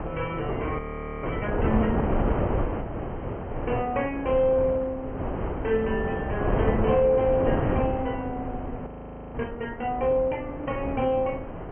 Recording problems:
treble missing; nothing above 3.2 kHz
wind on the microphone; below 600 Hz, SNR 3 dB
audio freezing; at 1 s and at 9 s

